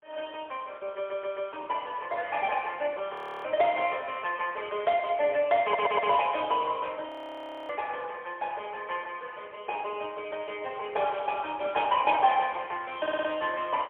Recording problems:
telephone audio; 340 Hz to 3.4 kHz, AMR-NB, then MP3
audio stuttering; at 1 s, at 5.5 s and at 13 s
audio freezing; at 3 s and at 7 s for 0.5 s

